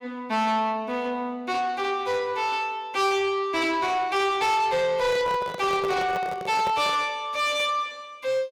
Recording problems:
distortion; soft clipping, signal-to-distortion ratio 10 dB
microphone handling noise; from 5 to 7 s; peak -2 dB vs average level

